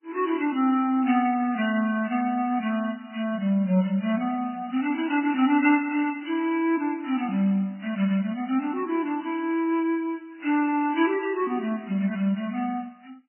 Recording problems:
codec artefacts; MP3, log-spectral distance 3 dB, nothing above 2.9 kHz

